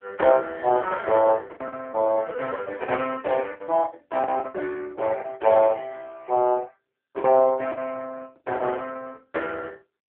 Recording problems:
telephone audio; 300 Hz to 3.3 kHz, AMR-NB
lost packets; 6% of the sound replaced, filled with the last packet

